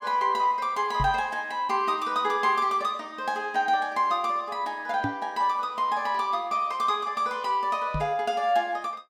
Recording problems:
microphone thump; at 1 s, at 5 s and at 8 s; peak -1 dB vs average level

